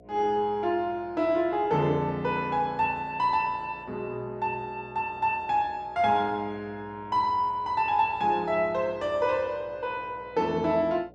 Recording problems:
hum; 60 Hz, harmonics up to 720 Hz, SNR 25 dB

